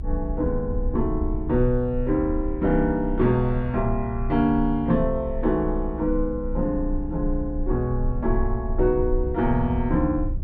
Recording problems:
low-frequency rumble; below 62 Hz, strongest tone 30 Hz, SNR 7 dB

